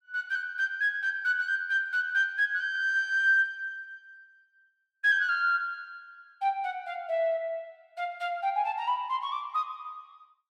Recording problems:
none

